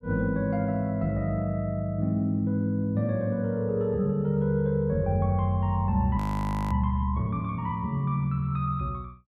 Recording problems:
audio freezing; at 6 s for 0.5 s

